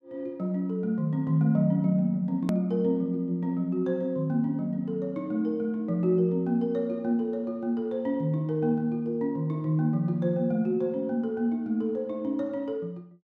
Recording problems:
edit click; at 2.5 s

